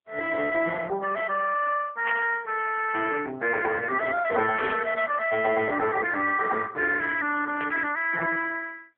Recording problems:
telephone audio; 340 Hz to 3.3 kHz, AMR-NB
static burst; at 2 s, at 4.5 s and at 7.5 s; peak -3 dB vs average level

